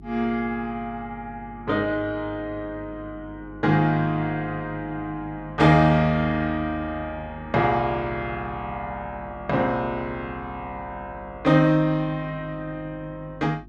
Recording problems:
hum; 50 Hz, harmonics up to 400 Hz, SNR 20 dB

